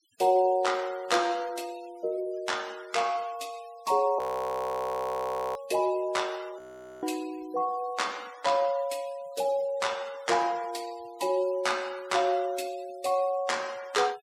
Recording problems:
denoising artefacts; signal-to-artefact ratio 22 dB
audio freezing; at 4 s for 1.5 s and at 6.5 s

